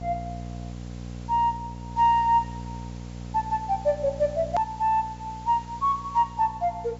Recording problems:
low-pass filter; nothing above 8 kHz
electrical hum; 60 Hz, harmonics up to 840 Hz, SNR 14 dB
hiss; slope -2 dB per octave, SNR 26 dB
edit click; at 4.5 s

